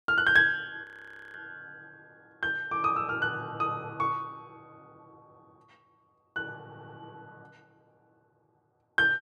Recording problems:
audio freezing; at 1 s for 0.5 s
stutter; at 6.5 s

